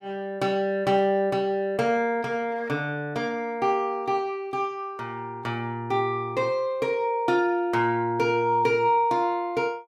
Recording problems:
none

